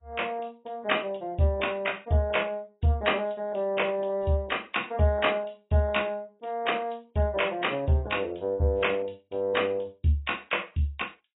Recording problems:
lossy codec; AAC, log-spectral distance 4 dB, nothing above 3.6 kHz

